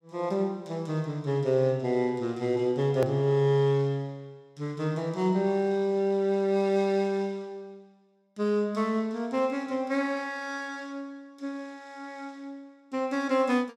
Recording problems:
hard cut with a click; at 3 s

